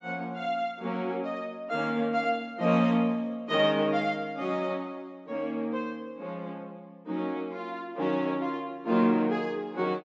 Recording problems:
treble cut off; nothing above 8 kHz

